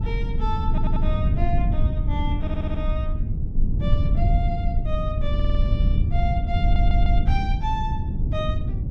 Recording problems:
low-frequency rumble; below 92 Hz, SNR -8 dB
wind noise; below 230 Hz, SNR 13 dB
audio stuttering; 4 times, first at 0.5 s

